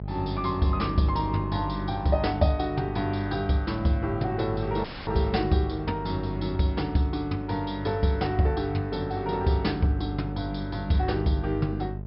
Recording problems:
treble cut off; nothing above 5.2 kHz
electrical hum; 50 Hz, harmonics up to 650 Hz, SNR 8 dB
audio cutting out; at 5 s

